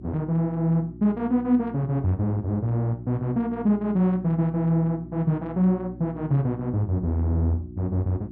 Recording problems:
hum; 60 Hz, harmonics up to 360 Hz, SNR 16 dB

